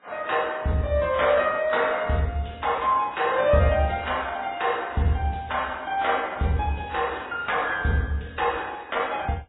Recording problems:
lossy codec; AAC, then MP3, log-spectral distance 4 dB, nothing above 3.8 kHz

